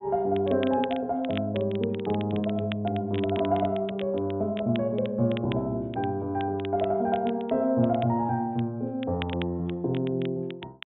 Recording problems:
low-pass filter; nothing above 3.7 kHz
crackling; vinyl, SNR 17 dB

